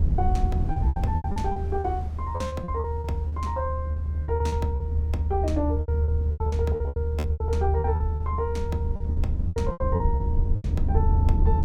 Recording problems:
low-frequency rumble; below 80 Hz, strongest tone 76 Hz, SNR -5 dB
wind on the microphone; below 140 Hz, SNR 14 dB
lost packets; 15% of the sound replaced, filled with repeated pitch periods

